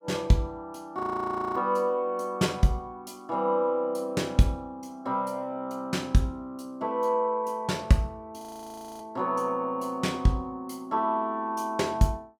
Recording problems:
frozen audio; at 1 s for 0.5 s and at 8.5 s for 0.5 s

